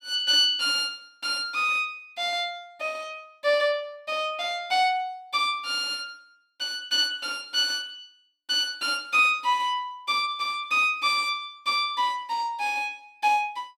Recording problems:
none

